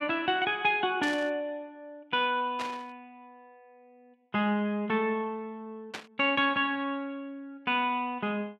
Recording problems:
burst of static; at 1 s, at 2.5 s and at 6 s; peak -4 dB vs average level

